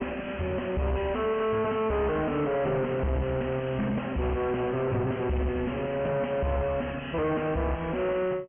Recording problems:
treble cut off; nothing above 3.1 kHz
distorted audio; soft clipping, signal-to-distortion ratio 5 dB

